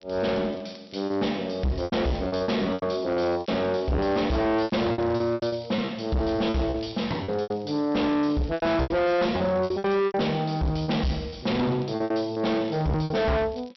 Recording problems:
low-pass filter; nothing above 5.7 kHz
distorted audio; soft clipping, signal-to-distortion ratio 6 dB
crackling; vinyl, SNR 29 dB
lost packets; 13% of the sound replaced, filled with repeated pitch periods

